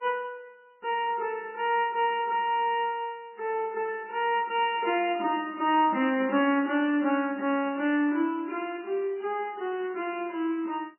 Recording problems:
codec artefacts; MP3, log-spectral distance 2 dB, nothing above 2.4 kHz

